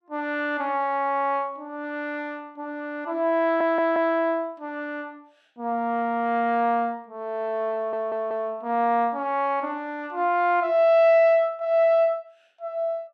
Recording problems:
stutter; at 3.5 s and at 7.5 s

